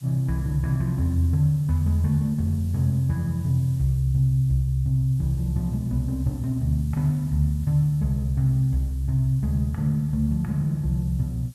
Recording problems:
background hiss; slope +1 dB per octave, SNR 28 dB

